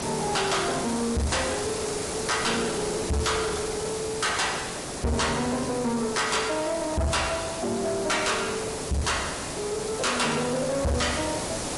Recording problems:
lossy compression; MP3, log-spectral distance 12 dB, nothing above 11 kHz
distorted audio; soft clipping, signal-to-distortion ratio 7 dB
hiss; SNR 5 dB

